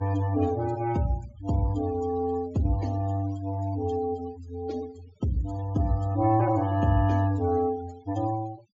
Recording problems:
treble cut off; nothing above 7.2 kHz
noise reduction artefacts; signal-to-artefact ratio 19 dB

